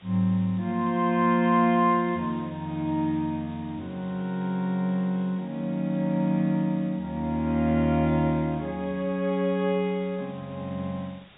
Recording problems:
treble missing; nothing above 4 kHz
background hiss; SNR 27 dB

